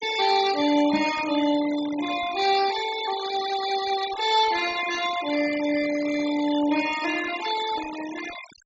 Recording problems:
treble missing; nothing above 8 kHz
denoising artefacts; signal-to-artefact ratio 12 dB
knock on the microphone; at 1 s; peak -4 dB vs average level

